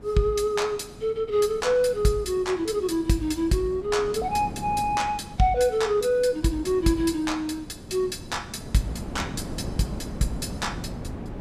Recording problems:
wind noise; below 340 Hz, SNR 13 dB

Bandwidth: 14.5 kHz